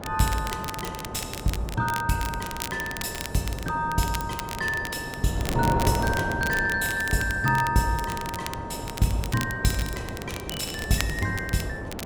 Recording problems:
wind on the microphone; below 580 Hz, SNR 7 dB
crackling; vinyl, SNR 10 dB

